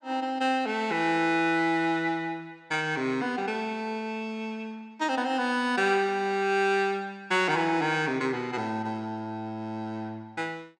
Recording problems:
none

